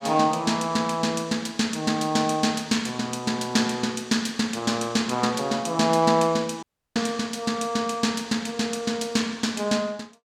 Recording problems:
dropout; at 6.5 s

